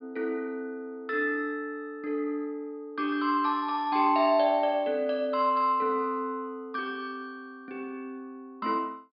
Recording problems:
treble cut off; nothing above 5 kHz

